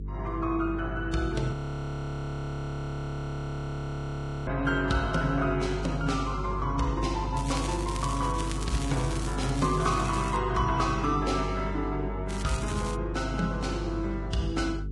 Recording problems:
lossy compression; Vorbis, log-spectral distance 3 dB, nothing above 16.6 kHz
hum; 50 Hz, harmonics up to 450 Hz, SNR 6 dB
audio freezing; at 1.5 s for 3 s
crackle; from 7.5 to 10 s and at 12 s; loose cable, SNR 10 dB

